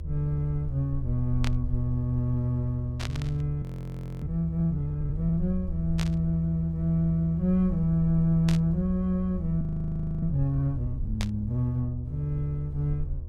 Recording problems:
hum; 60 Hz, harmonics up to 1.1 kHz, SNR 26 dB
rumble; below 78 Hz, SNR 8 dB
burst of static; 5 times, first at 1.5 s; peak -3 dB vs average level
frozen audio; at 3.5 s for 0.5 s and at 9.5 s for 0.5 s

